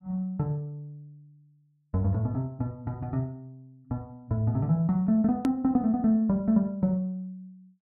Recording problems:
hard cut with a click; at 5.5 s

